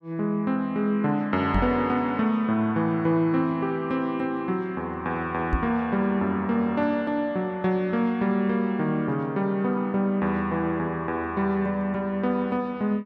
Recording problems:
knock on the microphone; at 1.5 s and at 5.5 s; peak +3 dB vs average level

